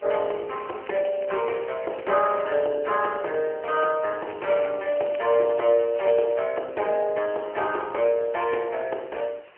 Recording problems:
telephone audio; 320 Hz to 2.9 kHz, AMR-NB
background hiss; SNR 27 dB
crackle; from 0.5 to 2.5 s and from 4.5 to 6.5 s; loose cable, SNR 22 dB

